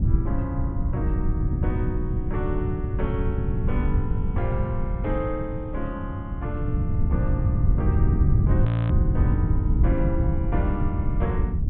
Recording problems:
treble missing; nothing above 4 kHz
wind noise; below 120 Hz, SNR -7 dB
frozen audio; at 8.5 s

